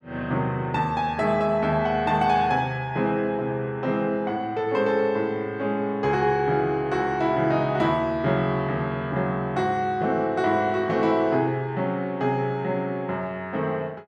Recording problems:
none

